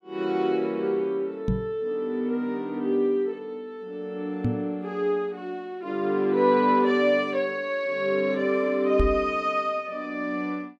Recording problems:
microphone bump; at 1.5 s, at 4.5 s and at 9 s; peak +4 dB vs average level

